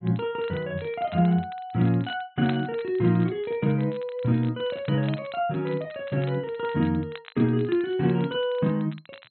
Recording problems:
crackling; vinyl, SNR 22 dB

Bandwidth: 4 kHz